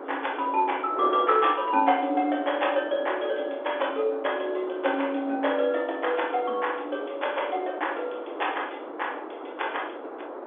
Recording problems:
phone line; 240 Hz to 3.5 kHz, G.711
wind on the microphone; below 880 Hz, SNR 10 dB

